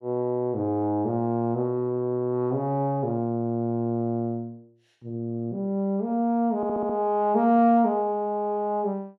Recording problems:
audio stuttering; at 6.5 s

